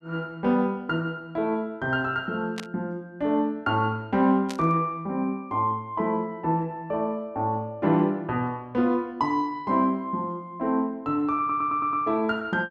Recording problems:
static burst; at 2.5 s and at 4.5 s; peak -5 dB vs average level
stutter; at 11 s

